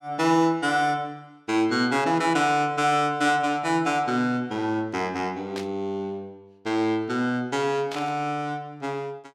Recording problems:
burst of static; at 5.5 s and at 8 s; peak -7 dB vs average level

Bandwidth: 16.5 kHz